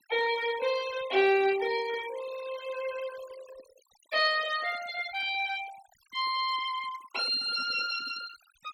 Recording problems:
denoising artefacts; signal-to-artefact ratio 16 dB

